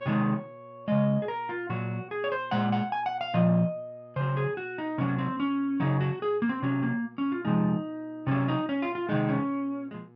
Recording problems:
hum; 60 Hz, harmonics up to 1.3 kHz, SNR 26 dB

